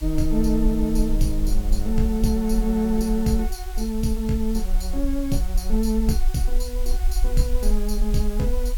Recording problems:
hiss; slope +2 dB per octave, SNR 18 dB
rumble; below 42 Hz, strongest tone 22 Hz, SNR 3 dB

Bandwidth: 18 kHz